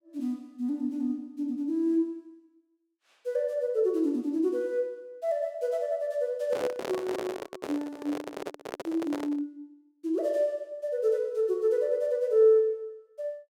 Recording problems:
microphone handling noise; from 6.5 to 9.5 s; peak -1 dB vs average level

